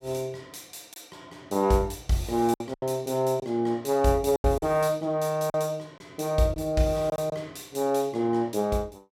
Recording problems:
packet loss; 5% of the sound replaced, filled with silence

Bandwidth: 16 kHz